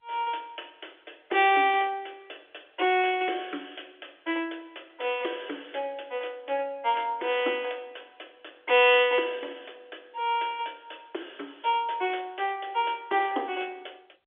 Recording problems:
telephone audio; 280 Hz to 3.5 kHz, G.711

